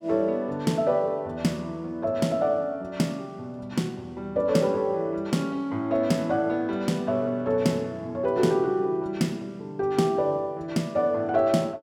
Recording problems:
none

